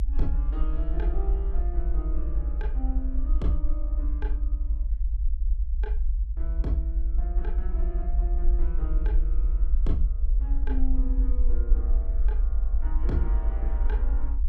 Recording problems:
low-frequency rumble; below 54 Hz, SNR -10 dB

